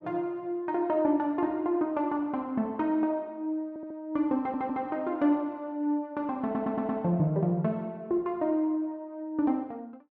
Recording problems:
audio stuttering; at 3.5 s, at 4.5 s and at 6.5 s

